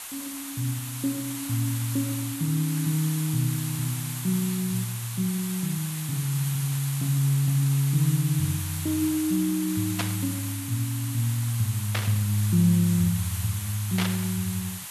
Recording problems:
hiss; SNR 7 dB
burst of static; at 10 s, at 12 s and at 14 s; peak +2 dB vs average level

